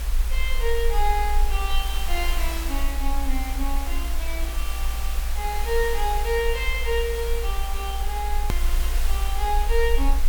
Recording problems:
background hiss; SNR 7 dB
low-frequency rumble; below 56 Hz, strongest tone 22 Hz, SNR 0 dB
hard cut with a click; at 8.5 s

